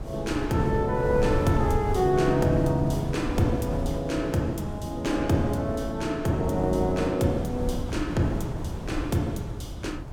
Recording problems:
wind noise; below 210 Hz, SNR 7 dB

